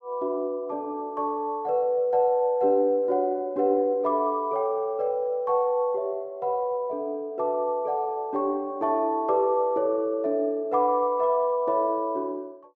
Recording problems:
none

